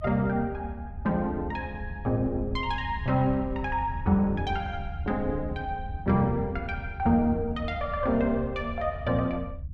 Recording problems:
rumble; below 82 Hz, SNR 10 dB

